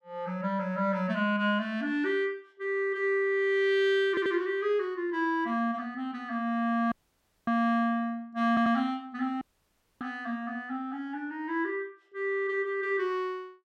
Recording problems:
audio stuttering; at 4 s and at 8.5 s
audio cutting out; at 7 s for 0.5 s and at 9.5 s for 0.5 s

